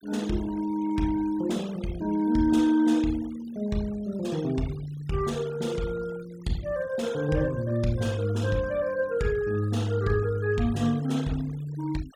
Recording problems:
noise reduction artefacts; signal-to-artefact ratio 21 dB

